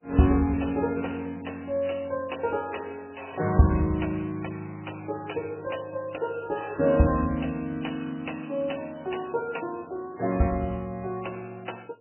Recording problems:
lossy compression; MP3, log-spectral distance 10 dB, nothing above 3 kHz

